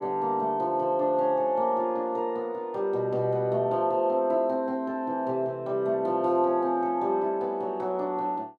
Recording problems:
none

